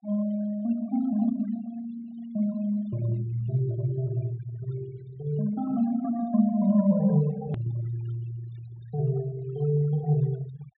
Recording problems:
low-pass filter; nothing above 4 kHz
noise reduction artefacts; signal-to-artefact ratio 20 dB
click at an edit; at 7.5 s

